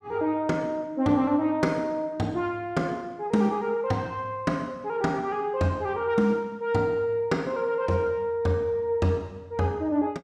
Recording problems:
none

